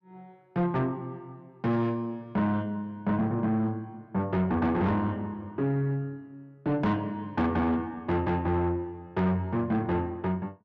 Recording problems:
distorted audio; soft clipping, signal-to-distortion ratio 10 dB

